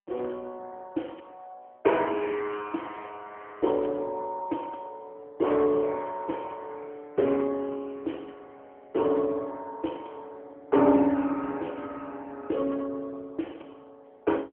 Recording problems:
phone line; 240 Hz to 3.3 kHz, AMR-NB

